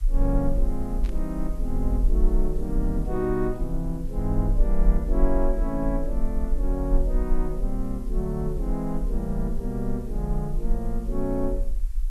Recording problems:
background hiss; slope 0 dB per octave, SNR 26 dB
rumble; below 40 Hz, strongest tone 24 Hz, SNR 0 dB
burst of static; at 1 s; peak -13 dB vs average level

